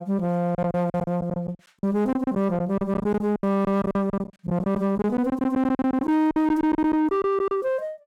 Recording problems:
distortion; soft clipping, signal-to-distortion ratio 11 dB
lost packets; 15% of the sound replaced, filled with silence

